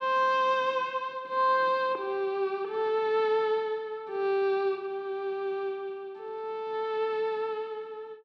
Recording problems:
none

